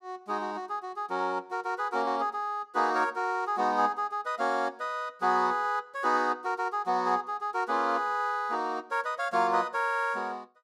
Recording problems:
none

